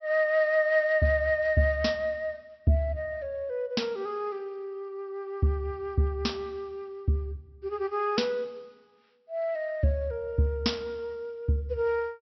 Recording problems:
treble missing; nothing above 5.7 kHz

